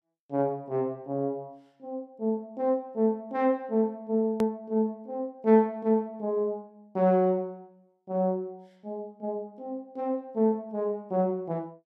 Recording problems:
edit click; at 4.5 s

